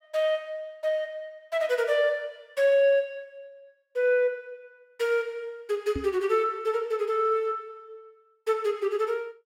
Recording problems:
microphone thump; at 6 s; peak -2 dB vs average level

